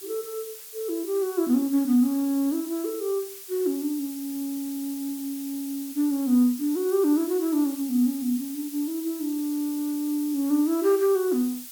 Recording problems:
hiss; slope +3 dB per octave, SNR 13 dB

